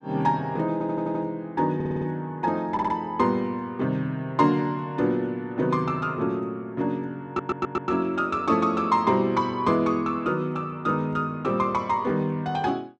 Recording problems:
stutter; 4 times, first at 0.5 s

